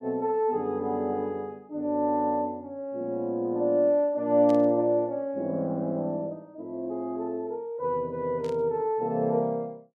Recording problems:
static burst; at 4.5 s and at 8.5 s; peak -14 dB vs average level

